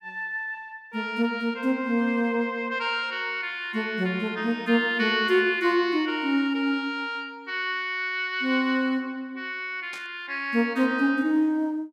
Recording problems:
burst of static; at 10 s; peak -12 dB vs average level

